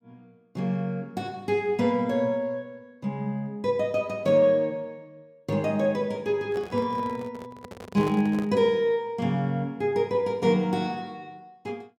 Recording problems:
handling noise; from 6.5 to 8.5 s; peak -4 dB vs average level

